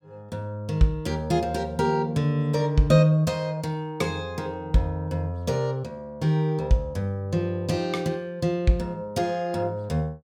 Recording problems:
none

